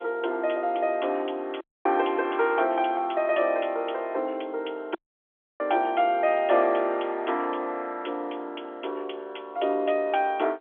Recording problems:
phone line; 300 Hz to 3.6 kHz, G.711
dropout; at 1.5 s and at 5 s for 0.5 s

